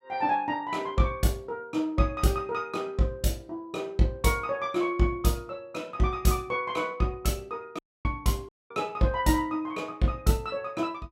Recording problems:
dropout; at 8 s and at 8.5 s

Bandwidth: 16.5 kHz